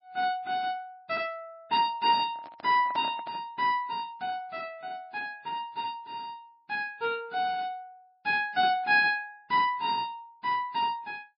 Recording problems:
lossy compression; MP3, log-spectral distance 2 dB, nothing above 4.6 kHz
handling noise; from 2 to 3.5 s; peak -6 dB vs average level

